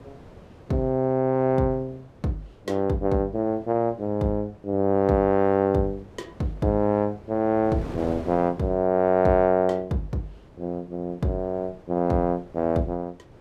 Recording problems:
wind on the microphone; below 580 Hz, SNR 21 dB

